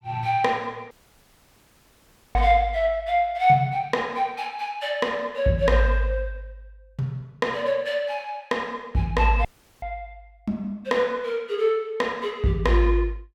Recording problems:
dropout; at 1 s for 1.5 s and at 9.5 s

